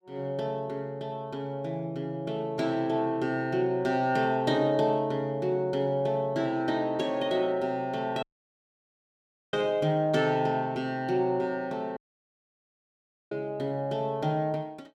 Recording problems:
audio cutting out; at 8 s for 1.5 s and at 12 s for 1.5 s

